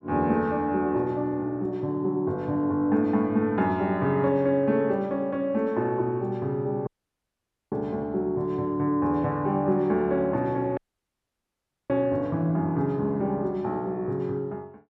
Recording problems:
dropout; at 7 s for 1 s and at 11 s for 1 s

